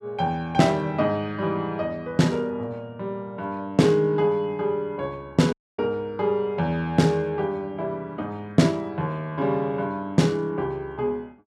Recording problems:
audio cutting out; at 5.5 s

